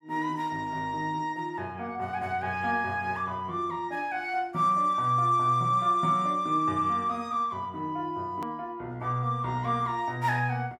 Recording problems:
edit click; at 8.5 s

